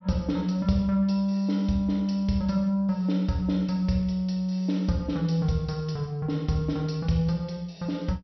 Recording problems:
treble missing; nothing above 5.9 kHz

